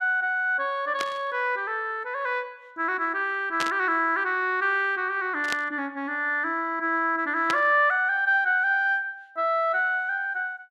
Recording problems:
burst of static; 4 times, first at 1 s; peak -1 dB vs average level

